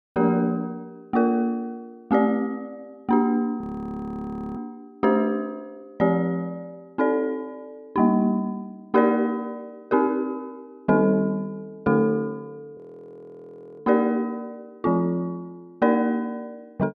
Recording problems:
frozen audio; at 3.5 s for 1 s and at 13 s for 1 s

